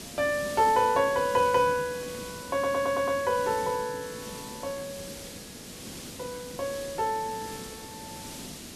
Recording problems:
hiss; SNR 13 dB
audio stuttering; at 2.5 s

